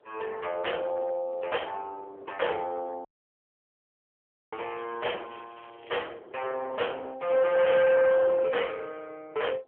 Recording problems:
telephone audio; 340 Hz to 3.4 kHz, AMR-NB
distortion; hard clipping, uneven, signal-to-distortion ratio 6 dB
wind noise; below 1.1 kHz, SNR 21 dB
audio cutting out; at 3 s for 1.5 s
crackle; from 4.5 to 6 s; loose cable, SNR 26 dB

